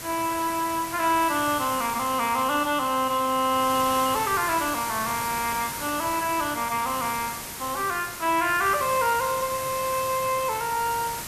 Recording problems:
background hiss; slope -2 dB per octave, SNR 8 dB

